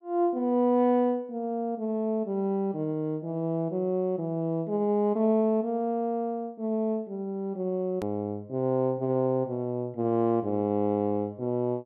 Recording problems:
click at an edit; at 8 s

